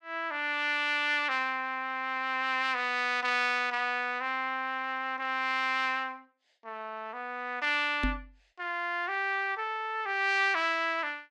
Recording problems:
microphone bump; at 8 s; peak +1 dB vs average level

